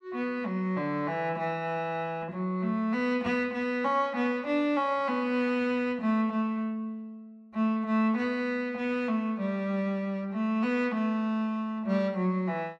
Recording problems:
none

